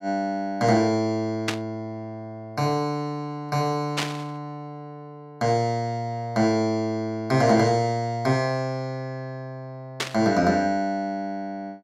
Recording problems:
static burst; at 1.5 s, at 4 s and at 10 s; peak +4 dB vs average level

